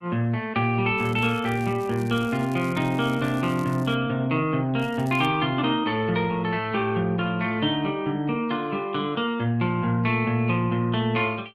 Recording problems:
lossy codec; Opus, log-spectral distance 2 dB
crackle; from 1 to 4 s and at 5 s; loose cable, SNR 25 dB

